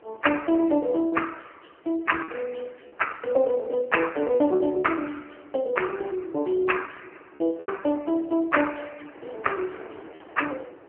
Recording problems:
telephone audio; 260 Hz to 3 kHz, AMR-NB
wind noise; below 800 Hz, SNR 24 dB
lost packets; 4% of the sound replaced, filled with repeated pitch periods

